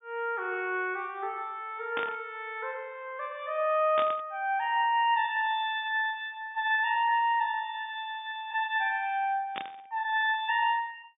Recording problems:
treble missing; nothing above 3.6 kHz
static burst; at 2 s, at 4 s and at 9.5 s; peak -2 dB vs average level

